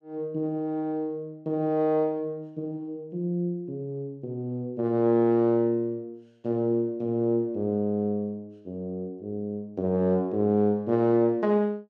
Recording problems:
none

